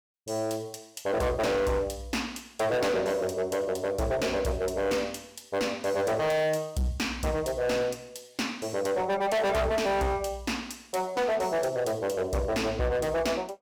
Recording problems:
distorted audio; hard clipping, uneven, signal-to-distortion ratio 6 dB

